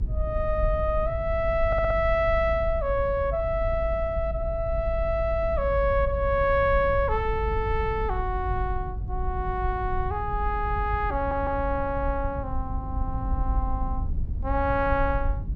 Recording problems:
rumble; below 72 Hz, SNR 5 dB
audio stuttering; at 1.5 s, at 5 s and at 11 s

